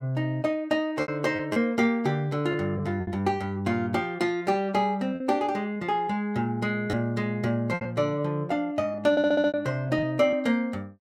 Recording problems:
lost packets; 6% of the sound replaced, filled with repeated pitch periods
stutter; at 9 s

